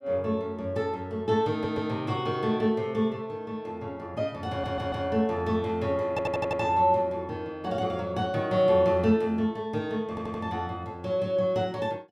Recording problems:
audio stuttering; 4 times, first at 1.5 s

